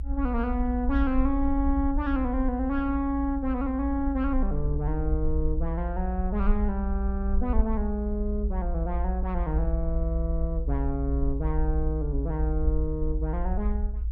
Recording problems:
rumble; below 58 Hz, SNR 1 dB

